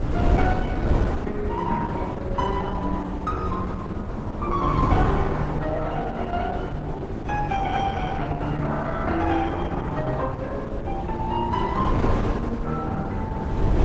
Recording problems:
codec artefacts; AAC, then Opus, log-spectral distance 3 dB, nothing above 7.3 kHz
wind noise; below 320 Hz, SNR 2 dB

